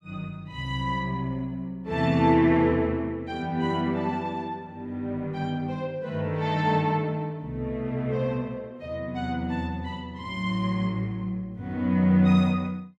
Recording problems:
none

